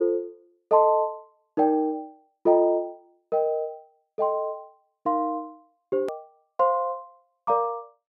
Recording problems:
edit click; at 6 s

